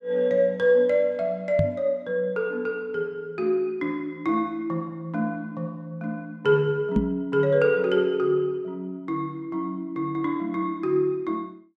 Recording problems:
knock on the microphone; at 1.5 s and at 7 s; peak +7 dB vs average level

